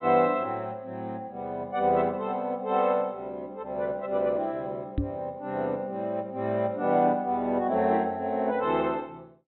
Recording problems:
low-pass filter; nothing above 3.9 kHz
knock on the microphone; at 5 s; peak +3 dB vs average level

